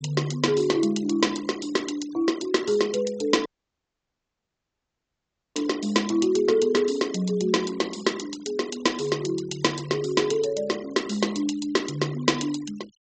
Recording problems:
low-pass filter; nothing above 8 kHz
denoising artefacts; signal-to-artefact ratio 20 dB
audio cutting out; at 3.5 s for 2 s

